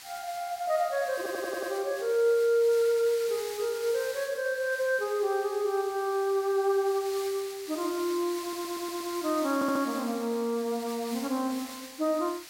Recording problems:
background hiss; slope +3 dB per octave, SNR 13 dB
audio stuttering; at 1 s, at 8.5 s and at 9.5 s

